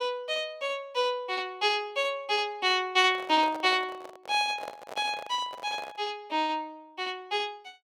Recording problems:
microphone handling noise; from 3 to 6 s; peak -7 dB vs average level

